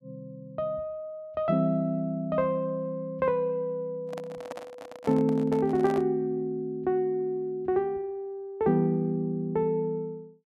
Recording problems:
microphone handling noise; from 4 to 6 s; peak -6 dB vs average level

